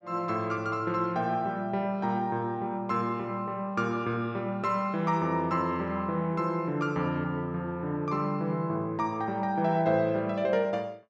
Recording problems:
none

